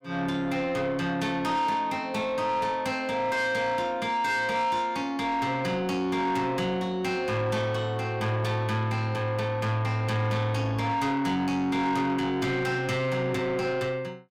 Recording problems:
distortion; soft clipping, signal-to-distortion ratio 11 dB

